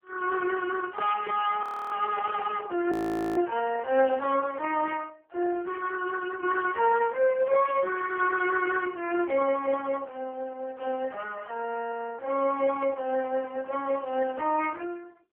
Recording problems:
telephone audio; 340 Hz to 2.8 kHz, AMR-NB
audio freezing; at 1.5 s and at 3 s
burst of static; 5 times, first at 2 s; peak -12 dB vs average level

